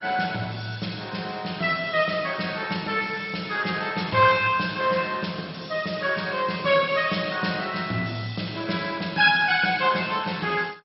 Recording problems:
lossy compression; MP2, log-spectral distance 6 dB, nothing above 5.5 kHz

